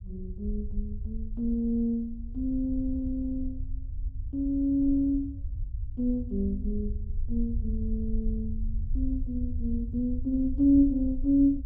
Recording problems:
low-frequency rumble; below 68 Hz, SNR 7 dB

